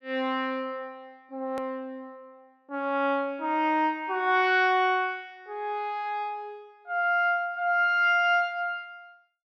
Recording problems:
click at an edit; at 1.5 s

